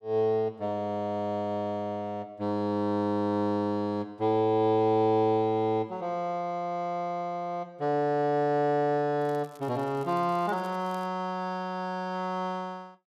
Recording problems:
crackle; from 9 to 11 s; loose cable, SNR 29 dB

